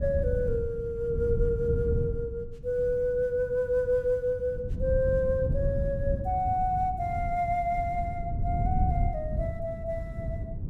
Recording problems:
wind noise; below 130 Hz, SNR 4 dB

